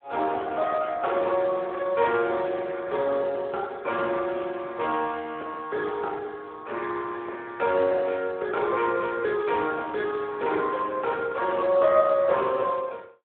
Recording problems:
phone line; 320 Hz to 2.8 kHz, Speex

